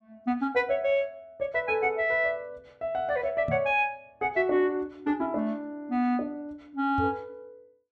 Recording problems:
microphone bump; at 3.5 s and at 7 s; peak -2 dB vs average level

